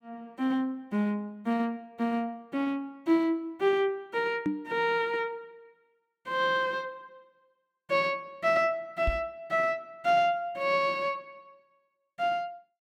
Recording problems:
microphone thump; at 4.5 s and at 9 s; peak +3 dB vs average level

